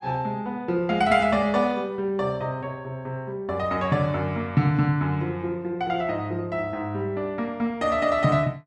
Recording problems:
none

